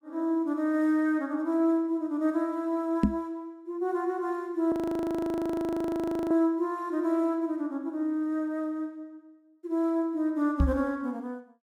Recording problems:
microphone bump; at 3 s and at 11 s; peak +9 dB vs average level
frozen audio; at 4.5 s for 1.5 s

